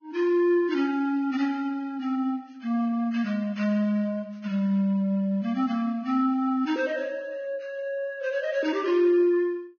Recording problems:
codec artefacts; Vorbis, log-spectral distance 2 dB, nothing above 6.3 kHz

